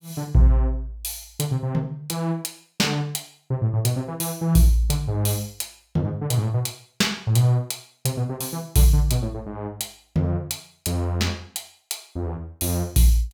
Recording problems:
none

